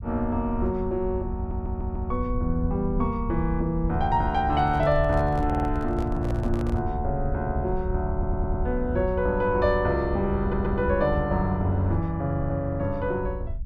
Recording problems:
low-frequency rumble; below 80 Hz, SNR 7 dB
audio stuttering; 4 times, first at 1.5 s
handling noise; from 4.5 to 7 s; peak -8 dB vs average level

